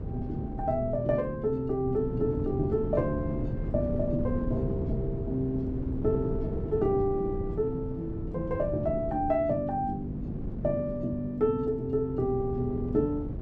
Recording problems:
wind noise; below 230 Hz, SNR 6 dB

